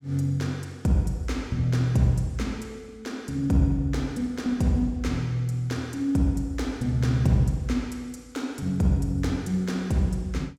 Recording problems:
none

